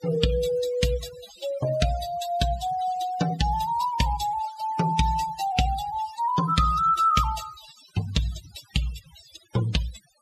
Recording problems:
denoising artefacts; signal-to-artefact ratio 13 dB

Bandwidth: 14.5 kHz